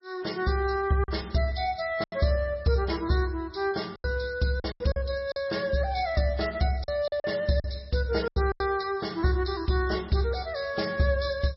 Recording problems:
lossy codec; MP3, log-spectral distance 5 dB, nothing above 5.5 kHz
lost packets; 6% of the sound replaced, filled with silence

